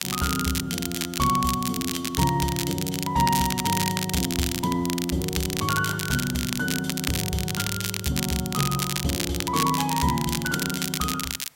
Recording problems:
hiss; SNR 29 dB
crackle; vinyl, SNR 3 dB

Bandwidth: 16 kHz